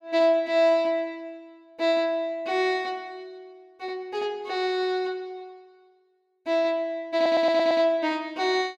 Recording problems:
stutter; at 7 s

